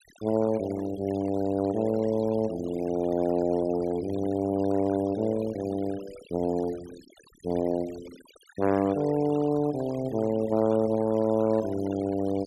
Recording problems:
denoising artefacts; signal-to-artefact ratio 19 dB

